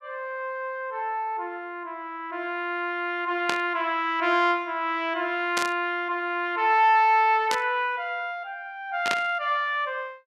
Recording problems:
burst of static; 4 times, first at 3.5 s; peak +2 dB vs average level

